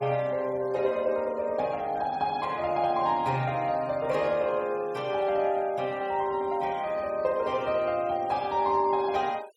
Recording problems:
denoising artefacts; signal-to-artefact ratio 25 dB

